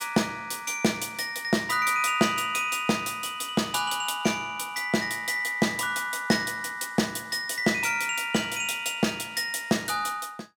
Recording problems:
none

